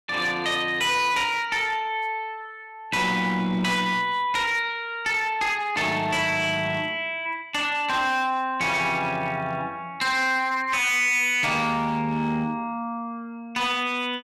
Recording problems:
distortion; hard clipping, signal-to-distortion ratio 11 dB

